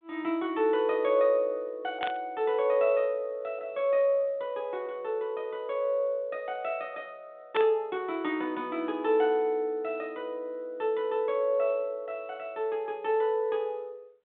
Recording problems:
phone line; 220 Hz to 3.7 kHz, G.726
static burst; at 2 s and at 7.5 s; peak -1 dB vs average level

